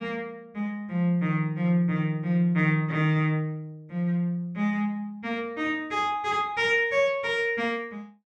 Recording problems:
none

